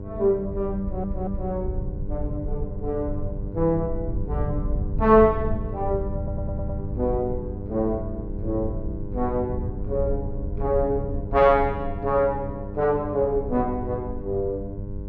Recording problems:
electrical hum; 50 Hz, harmonics up to 1 kHz, SNR 12 dB
low-frequency rumble; below 98 Hz, SNR 8 dB
audio stuttering; at 1 s and at 6 s

